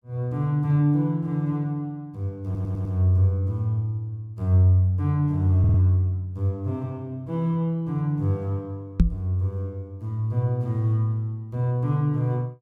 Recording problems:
stutter; at 2.5 s and at 5.5 s
microphone bump; at 9 s; peak +9 dB vs average level

